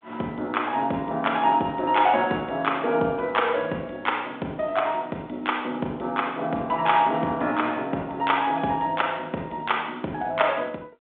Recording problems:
telephone audio; 260 Hz to 3.4 kHz, G.726

